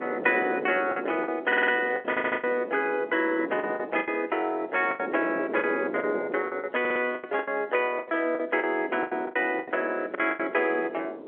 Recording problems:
phone line; 320 Hz to 3.4 kHz, G.711
wind on the microphone; below 550 Hz, SNR 10 dB
lost packets; 12% of the sound replaced, filled with the last packet
audio stuttering; at 1.5 s, at 2 s and at 7 s

